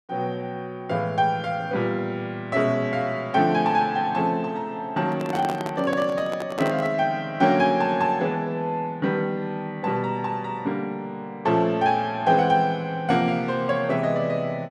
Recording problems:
handling noise; from 5 to 7 s; peak -3 dB vs average level

